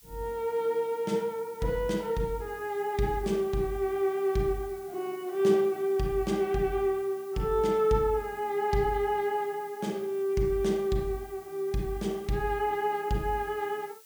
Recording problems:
hiss; slope +4 dB per octave, SNR 23 dB

